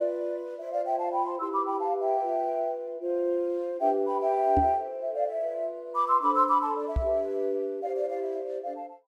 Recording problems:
knock on the microphone; at 4.5 s and at 7 s; peak +3 dB vs average level

